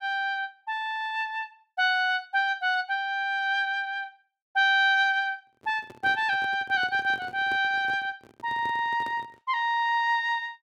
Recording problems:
handling noise; from 5.5 to 9.5 s; peak -12 dB vs average level

